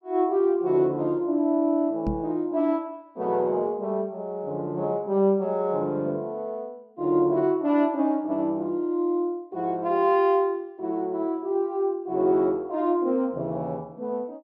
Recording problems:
microphone thump; at 2 s; peak +1 dB vs average level

